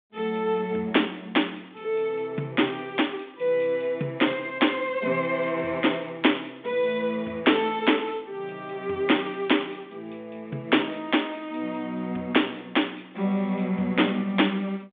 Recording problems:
telephone audio; 190 Hz to 3.6 kHz, G.726

